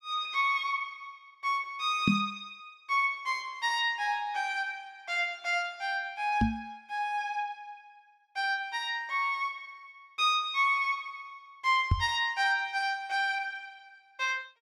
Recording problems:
knock on the microphone; at 2 s, at 6.5 s and at 12 s; peak +7 dB vs average level

